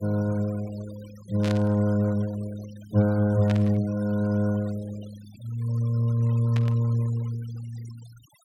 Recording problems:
noise reduction artefacts; signal-to-artefact ratio 23 dB
burst of static; at 1.5 s, at 3.5 s and at 6.5 s; peak -6 dB vs average level

